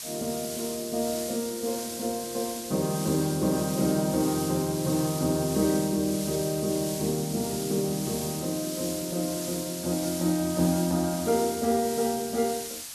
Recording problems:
background hiss; slope +2 dB per octave, SNR 7 dB

